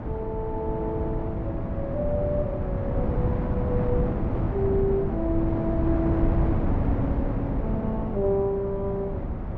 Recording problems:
treble missing; nothing above 8 kHz
wind on the microphone; below 250 Hz, SNR -1 dB

